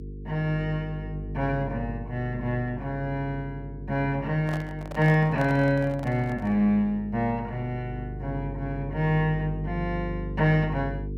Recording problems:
hum; 50 Hz, harmonics up to 450 Hz, SNR 10 dB
microphone handling noise; from 4.5 to 6.5 s; peak -5 dB vs average level

